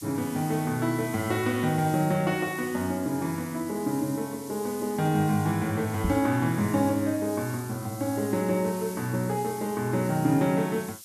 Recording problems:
background hiss; slope +5 dB per octave, SNR 15 dB
microphone bump; at 6 s; peak +4 dB vs average level

